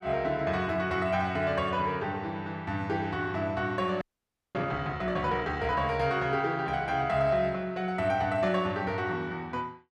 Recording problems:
frozen audio; at 4 s for 0.5 s

